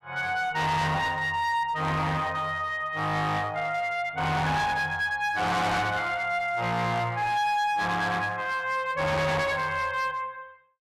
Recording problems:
distorted audio; hard clipping, uneven, signal-to-distortion ratio 7 dB

